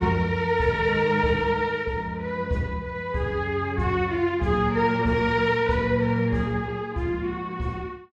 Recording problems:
none

